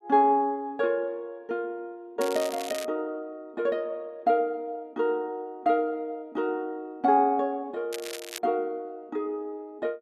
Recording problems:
crackle; at 2 s and at 8 s; loose cable, SNR 11 dB

